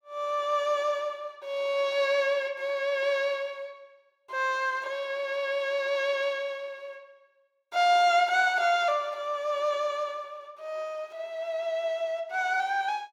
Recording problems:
none

